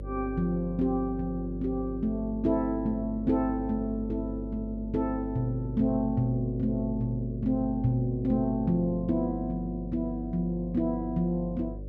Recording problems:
hum; 50 Hz, harmonics up to 600 Hz, SNR 10 dB

